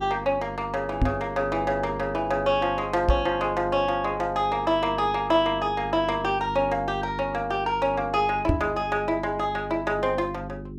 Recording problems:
electrical hum; 50 Hz, harmonics up to 400 Hz, SNR 12 dB
microphone bump; at 1 s, at 3 s and at 8.5 s; peak +6 dB vs average level

